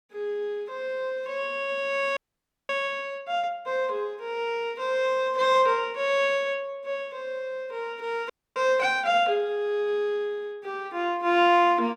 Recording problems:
audio freezing; at 2 s for 0.5 s and at 8.5 s

